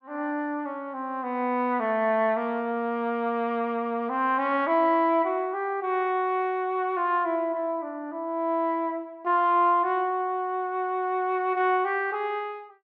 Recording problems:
none

